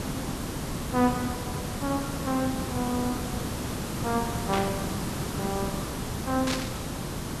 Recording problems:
background hiss; slope -5 dB per octave, SNR 1 dB
burst of static; at 4.5 s and at 6.5 s; peak +4 dB vs average level

